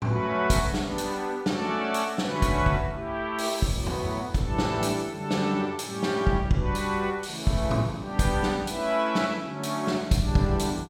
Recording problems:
none

